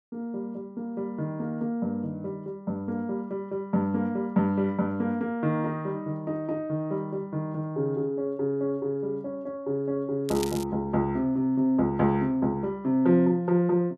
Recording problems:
crackle; at 10 s; loose cable, SNR 13 dB

